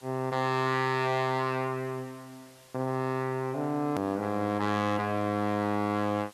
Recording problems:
distorted audio; soft clipping, signal-to-distortion ratio 11 dB
background hiss; slope 0 dB per octave, SNR 26 dB
edit click; at 4 s

